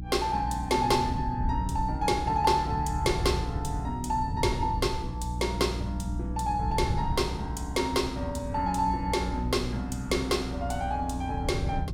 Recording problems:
electrical hum; 60 Hz, harmonics up to 300 Hz, SNR 8 dB
wind on the microphone; below 120 Hz, SNR 9 dB

